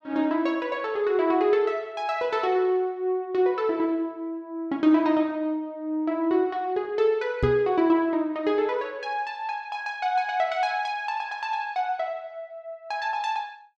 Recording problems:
microphone thump; at 7.5 s; peak +3 dB vs average level

